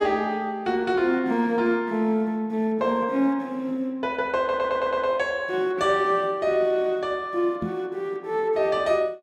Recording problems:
stutter; at 4.5 s
microphone thump; at 7.5 s; peak -2 dB vs average level

